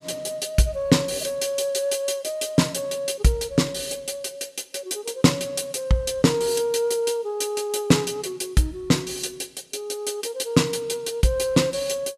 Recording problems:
none

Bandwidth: 14.5 kHz